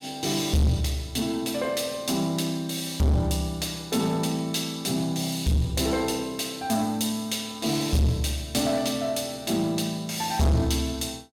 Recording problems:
distorted audio; soft clipping, signal-to-distortion ratio 8 dB

